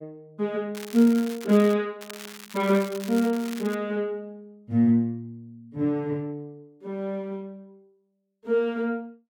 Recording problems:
crackle; at 1 s and from 2 to 3.5 s; loose cable, SNR 16 dB

